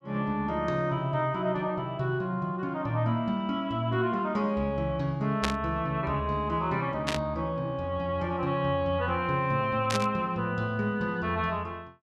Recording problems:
static burst; at 5.5 s, at 7 s and at 10 s; peak +4 dB vs average level

